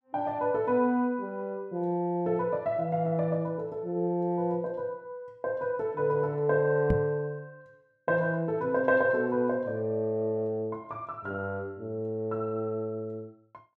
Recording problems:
microphone thump; at 7 s; peak +6 dB vs average level

